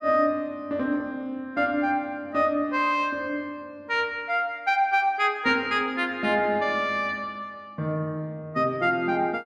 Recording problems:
none

